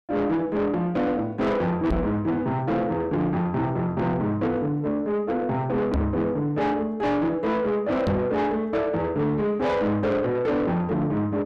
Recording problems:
distortion; soft clipping, signal-to-distortion ratio 8 dB
knock on the microphone; at 2 s, at 6 s and at 8 s; peak +5 dB vs average level

